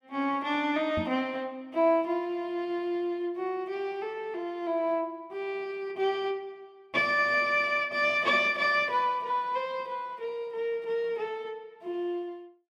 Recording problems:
microphone bump; at 1 s; peak -2 dB vs average level

